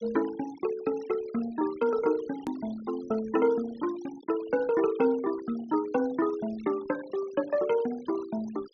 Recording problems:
treble missing; nothing above 6.4 kHz
denoising artefacts; signal-to-artefact ratio 19 dB
click at an edit; at 2.5 s

